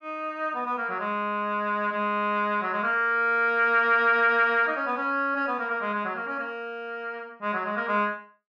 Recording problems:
none

